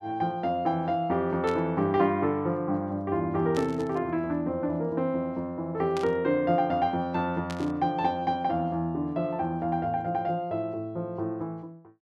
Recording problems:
burst of static; 4 times, first at 1.5 s; peak -7 dB vs average level

